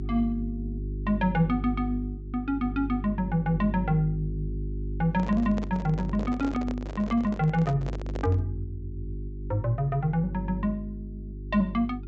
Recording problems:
treble missing; nothing above 8 kHz
mains hum; 50 Hz, harmonics up to 400 Hz, SNR 8 dB
handling noise; from 5 to 8.5 s; peak -5 dB vs average level

